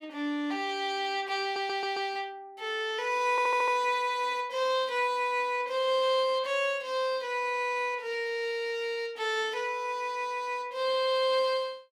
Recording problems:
stutter; at 1.5 s and at 3.5 s

